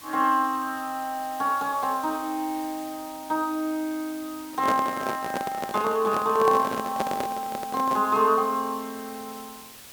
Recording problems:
hiss; slope 0 dB per octave, SNR 17 dB
microphone handling noise; from 4.5 to 8 s; peak +2 dB vs average level

